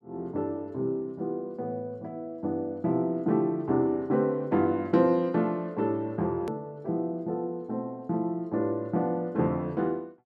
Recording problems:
edit click; at 6.5 s

